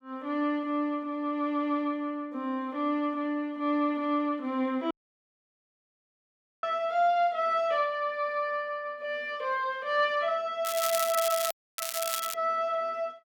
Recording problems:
audio cutting out; at 5 s for 1.5 s and at 12 s
crackle; from 11 to 12 s; loose cable, SNR 4 dB

